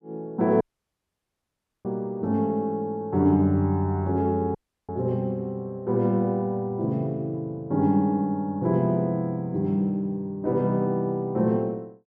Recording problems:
dropout; at 0.5 s for 1 s and at 4.5 s

